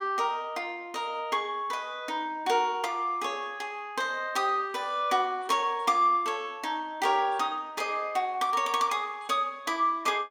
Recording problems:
none

